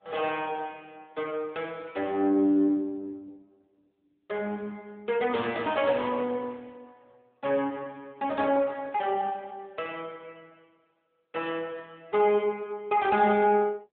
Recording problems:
phone line; 220 Hz to 3.5 kHz, AMR-NB

